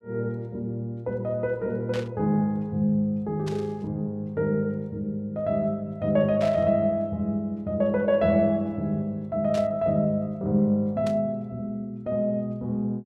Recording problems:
static burst; 5 times, first at 2 s; peak -8 dB vs average level

